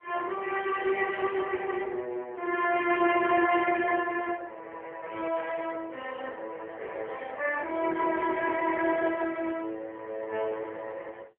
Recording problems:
telephone audio; 300 Hz to 3.3 kHz, AMR-NB

